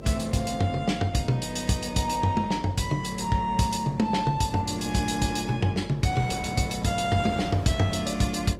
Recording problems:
codec artefacts; Opus, log-spectral distance 4 dB, nothing above 18.9 kHz
electrical hum; 50 Hz, harmonics up to 600 Hz, SNR 15 dB
wind noise; below 570 Hz, SNR 16 dB

